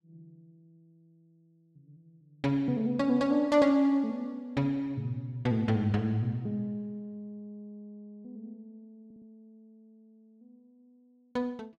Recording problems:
audio stuttering; at 9 s

